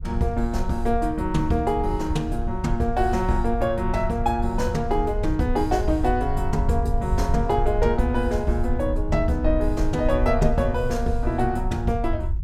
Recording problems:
low-frequency rumble; below 68 Hz, SNR 5 dB

